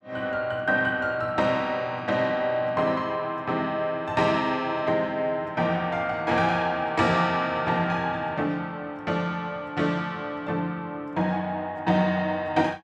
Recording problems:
none

